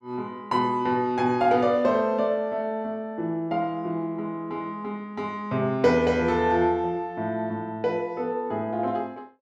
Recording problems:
none

